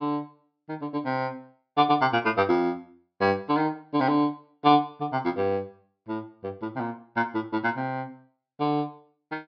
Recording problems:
low-pass filter; nothing above 5.5 kHz

